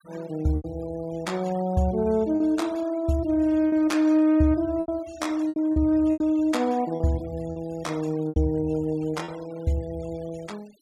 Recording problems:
denoising artefacts; signal-to-artefact ratio 24 dB
lost packets; 6% of the sound replaced, filled with repeated pitch periods

